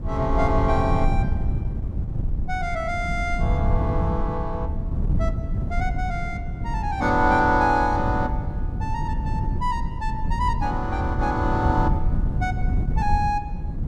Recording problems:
wind noise; below 120 Hz, SNR 1 dB

